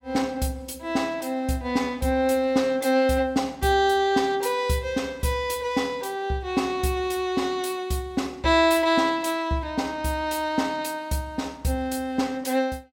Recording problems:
none

